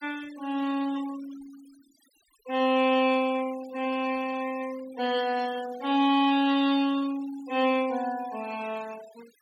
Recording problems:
noise reduction artefacts; signal-to-artefact ratio 20 dB

